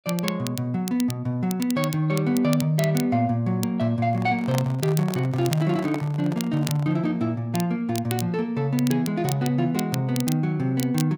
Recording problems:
crackle; vinyl, SNR 13 dB
microphone handling noise; from 4 to 7 s; peak -4 dB vs average level

